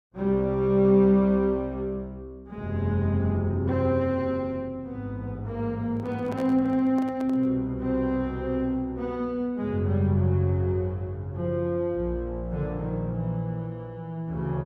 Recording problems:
microphone handling noise; from 6 to 7.5 s; peak -9 dB vs average level

